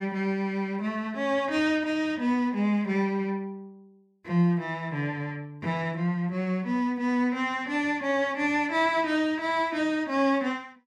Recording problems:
none

